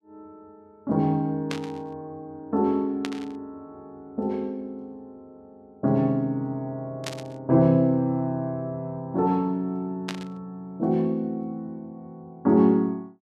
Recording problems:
static burst; 4 times, first at 1.5 s; peak -3 dB vs average level

